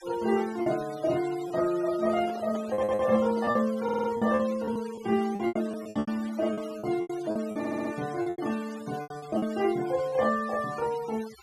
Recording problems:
noise reduction artefacts; signal-to-artefact ratio 17 dB
packet loss; 11% of the sound replaced, filled with repeated pitch periods
microphone handling noise; from 2 to 3.5 s; peak -8 dB vs average level
stutter; at 2.5 s, at 4 s and at 7.5 s

